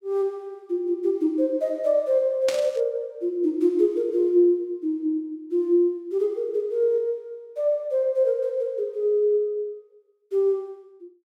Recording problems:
static burst; at 2.5 s; peak -3 dB vs average level

